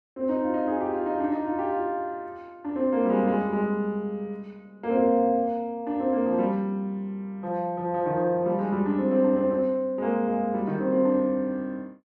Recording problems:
none

